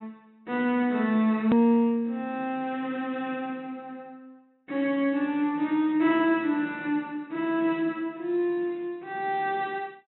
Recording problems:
treble cut off; nothing above 3.9 kHz
edit click; at 1.5 s

